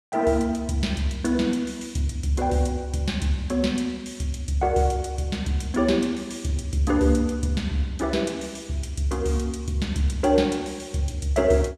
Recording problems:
none

